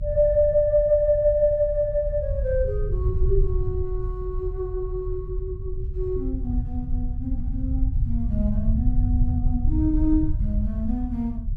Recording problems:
low-frequency rumble; below 80 Hz, SNR 3 dB

